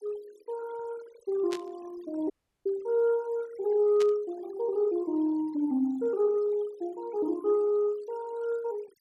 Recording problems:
noise reduction artefacts; signal-to-artefact ratio 23 dB
static burst; at 1.5 s and at 4 s; peak -6 dB vs average level
dropout; at 2.5 s

